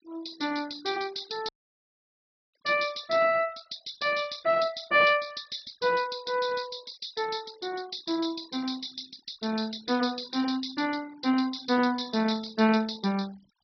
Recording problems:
low-pass filter; nothing above 5.5 kHz
noise reduction artefacts; signal-to-artefact ratio 21 dB
audio cutting out; at 1.5 s for 1 s

